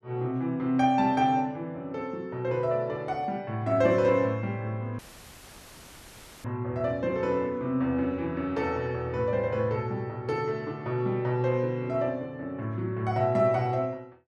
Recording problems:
dropout; at 5 s for 1.5 s; filled with static

